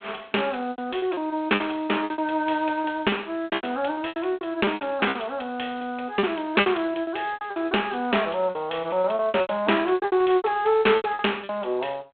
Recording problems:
phone line; 260 Hz to 3.5 kHz, G.726
lost packets; 18% of the sound replaced, filled with repeated pitch periods

